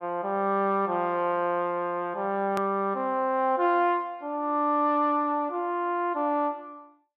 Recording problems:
hard cut with a click; at 2.5 s

